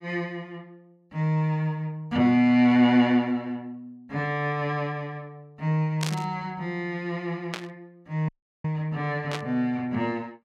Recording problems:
static burst; at 6 s, at 7.5 s and at 9.5 s; peak -1 dB vs average level
dropout; at 8.5 s

